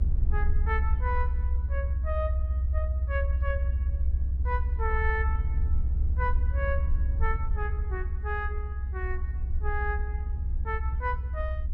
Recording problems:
low-frequency rumble; below 66 Hz, SNR -6 dB

